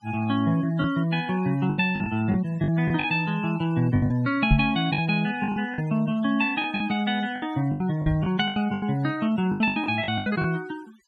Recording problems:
noise reduction artefacts; signal-to-artefact ratio 21 dB
lost packets; 12% of the sound replaced, filled with the last packet
microphone bump; at 4.5 s and at 8 s; peak +7 dB vs average level

